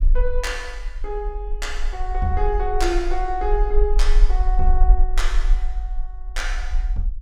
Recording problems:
rumble; below 38 Hz, SNR -2 dB

